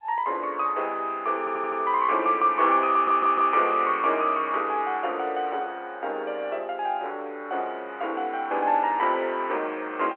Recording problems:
phone line; 320 Hz to 3.2 kHz, G.711
stutter; at 1.5 s and at 3 s

